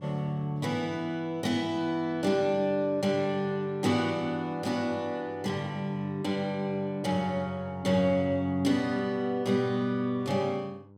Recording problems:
hum; 50 Hz, harmonics up to 1 kHz, SNR 23 dB

